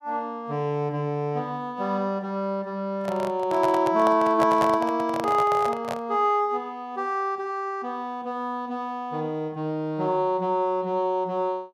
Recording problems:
microphone handling noise; from 3 to 6 s; peak +1 dB vs average level

